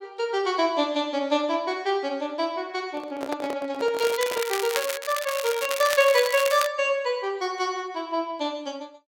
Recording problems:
microphone handling noise; from 3 to 4.5 s; peak -3 dB vs average level
crackle; from 4 to 6.5 s; loose cable, SNR 6 dB

